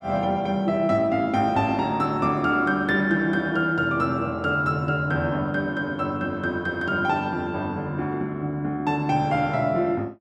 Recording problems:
none

